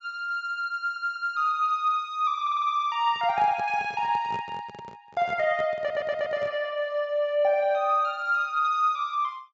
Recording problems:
treble cut off; nothing above 8 kHz
audio stuttering; at 1 s, at 2.5 s and at 6 s
handling noise; from 3 to 6.5 s; peak -10 dB vs average level

